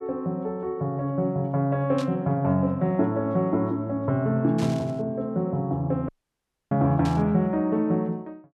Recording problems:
static burst; at 2 s, at 4.5 s and at 7 s; peak -9 dB vs average level
audio cutting out; at 6 s for 0.5 s

